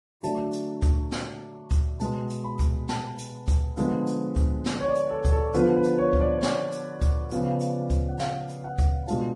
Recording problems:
codec artefacts; Vorbis, log-spectral distance 2 dB, nothing above 10.4 kHz

